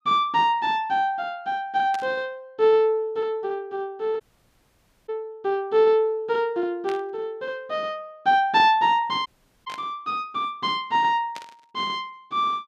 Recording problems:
static burst; 4 times, first at 2 s; peak -10 dB vs average level
audio cutting out; at 4 s for 1 s and at 9.5 s

